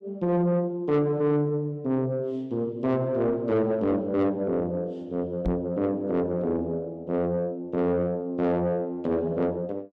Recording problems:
distorted audio; soft clipping, signal-to-distortion ratio 11 dB
microphone thump; at 5.5 s; peak +2 dB vs average level

